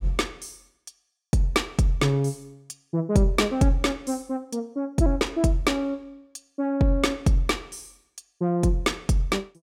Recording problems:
none

